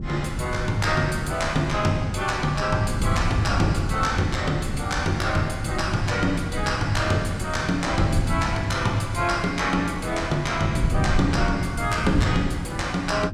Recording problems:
wind noise; below 170 Hz, SNR 5 dB

